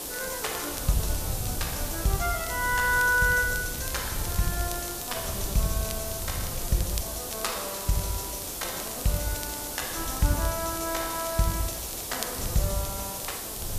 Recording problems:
background hiss; SNR 3 dB
wind noise; below 100 Hz, SNR 10 dB
crackle; vinyl, SNR 15 dB

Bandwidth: 14.5 kHz